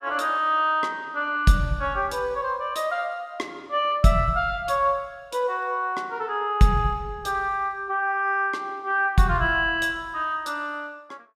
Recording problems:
none

